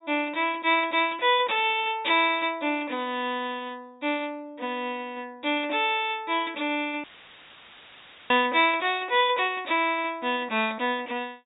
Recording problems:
treble missing; nothing above 4 kHz
audio cutting out; at 7 s for 1.5 s; filled with static

